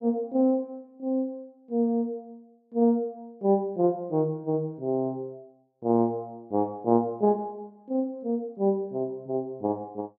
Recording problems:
none

